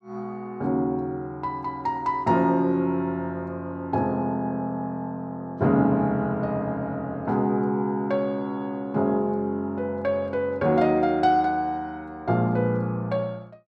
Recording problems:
none

